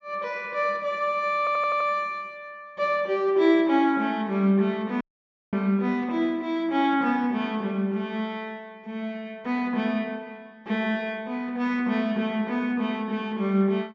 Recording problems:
treble missing; nothing above 8 kHz
stutter; at 1.5 s
audio cutting out; at 5 s for 0.5 s

